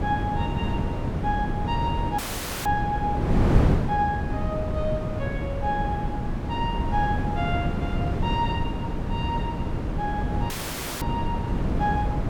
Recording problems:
wind on the microphone; below 270 Hz, SNR -3 dB
audio cutting out; at 2 s and at 11 s for 0.5 s

